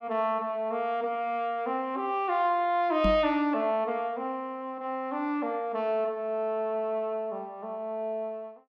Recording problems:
microphone thump; at 3 s; peak +3 dB vs average level

